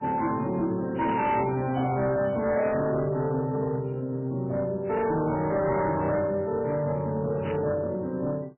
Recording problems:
codec artefacts; MP3, log-spectral distance 3 dB, nothing above 2.7 kHz
distorted audio; hard clipping, signal-to-distortion ratio 11 dB
burst of static; at 1 s and at 7.5 s; peak -10 dB vs average level

